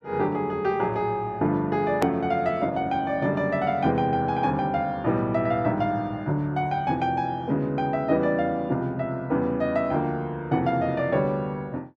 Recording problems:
click at an edit; at 2 s

